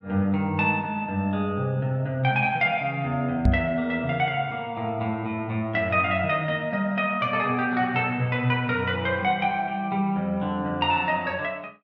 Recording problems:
microphone thump; at 3.5 s; peak +7 dB vs average level

